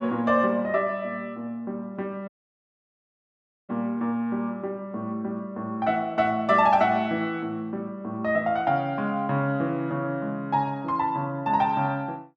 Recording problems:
dropout; at 2.5 s for 1.5 s

